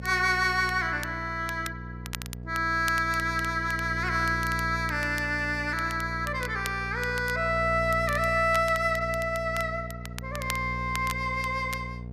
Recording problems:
electrical hum; 60 Hz, harmonics up to 720 Hz, SNR 10 dB
crackling; vinyl, SNR 16 dB

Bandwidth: 14.5 kHz